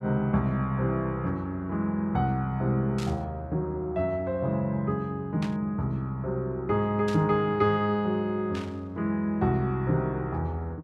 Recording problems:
burst of static; 4 times, first at 3 s; peak -7 dB vs average level

